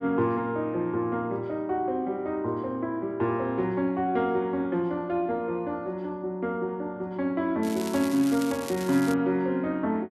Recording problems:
crackle; from 7.5 to 9 s; loose cable, SNR 13 dB

